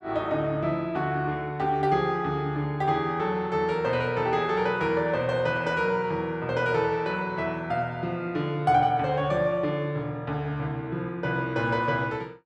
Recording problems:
none

